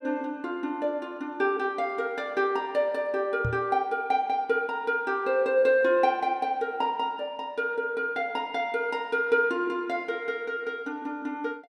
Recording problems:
microphone thump; at 3.5 s; peak 0 dB vs average level

